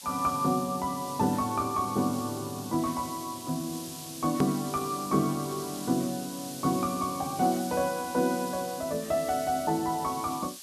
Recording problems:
hiss; SNR 11 dB
edit click; at 4.5 s

